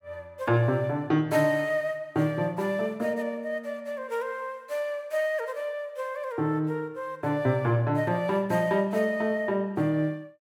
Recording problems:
none

